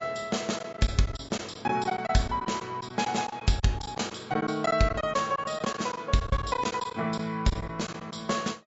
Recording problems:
treble missing; nothing above 7.6 kHz
codec artefacts; Vorbis, log-spectral distance 3 dB
lost packets; 9% of the sound replaced, filled with silence

